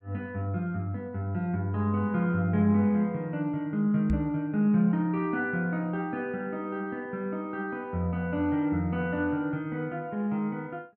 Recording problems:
microphone bump; at 4 s; peak +4 dB vs average level

